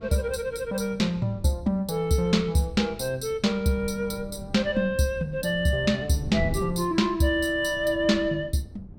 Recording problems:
wind noise; below 180 Hz, SNR 15 dB

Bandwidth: 16.5 kHz